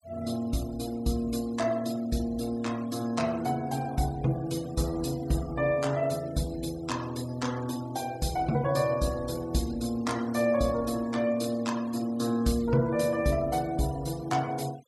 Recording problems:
noise reduction artefacts; signal-to-artefact ratio 18 dB

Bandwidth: 15 kHz